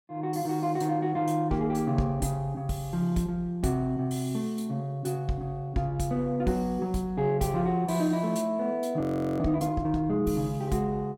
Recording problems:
audio freezing; at 9 s

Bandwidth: 17 kHz